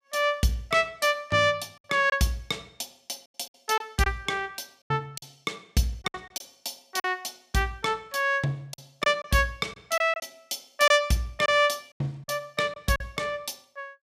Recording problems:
lost packets; 6% of the sound replaced, filled with silence

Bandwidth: 15.5 kHz